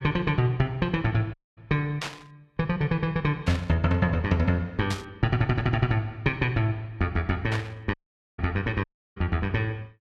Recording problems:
dropout; at 1.5 s, at 8 s and at 9 s
static burst; 4 times, first at 2 s; peak -2 dB vs average level

